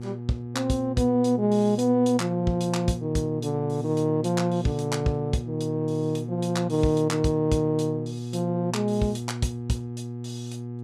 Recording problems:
electrical hum; 60 Hz, harmonics up to 720 Hz, SNR 8 dB

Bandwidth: 13.5 kHz